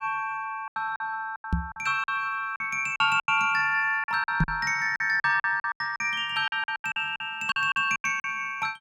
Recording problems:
lost packets; 15% of the sound replaced, filled with silence
knock on the microphone; at 1.5 s and at 4.5 s; peak +5 dB vs average level

